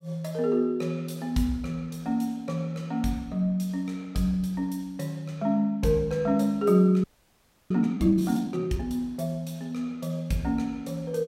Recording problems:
frozen audio; at 7 s for 0.5 s

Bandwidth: 16 kHz